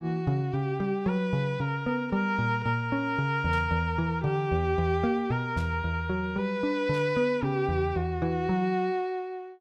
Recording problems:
static burst; at 3.5 s, at 5.5 s and at 7 s; peak -14 dB vs average level

